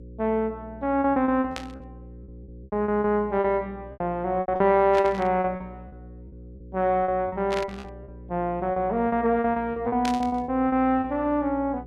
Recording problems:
hum; 60 Hz, harmonics up to 540 Hz, SNR 19 dB
lost packets; 14% of the sound replaced, filled with repeated pitch periods
burst of static; 4 times, first at 1.5 s; peak -5 dB vs average level

